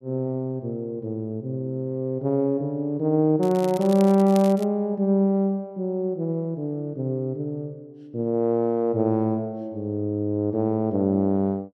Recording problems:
crackle; from 3.5 to 4.5 s; loose cable, SNR 19 dB

